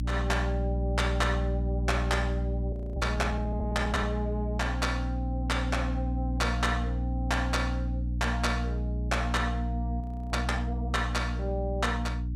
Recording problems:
electrical hum; 60 Hz, harmonics up to 300 Hz, SNR -1 dB
frozen audio; at 2.5 s and at 10 s

